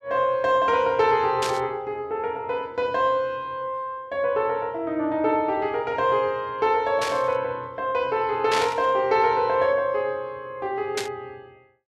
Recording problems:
static burst; 4 times, first at 1.5 s; peak +1 dB vs average level

